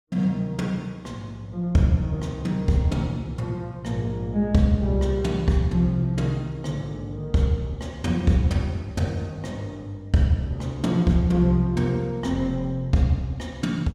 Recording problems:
none

